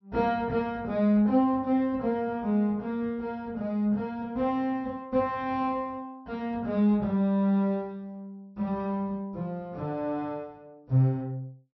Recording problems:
low-pass filter; nothing above 5.8 kHz

